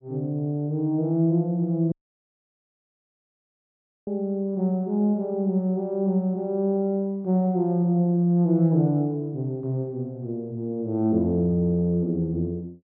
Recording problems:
dropout; at 2 s for 2 s

